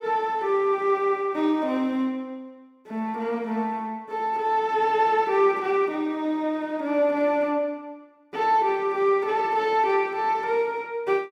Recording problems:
none

